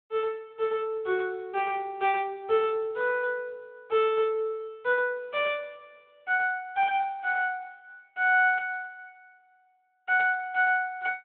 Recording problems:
telephone audio; 240 Hz to 3.7 kHz, Speex

